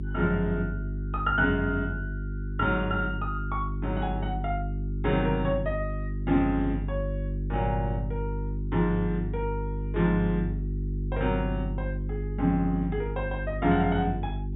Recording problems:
low-pass filter; nothing above 4 kHz
hum; 50 Hz, harmonics up to 400 Hz, SNR 4 dB

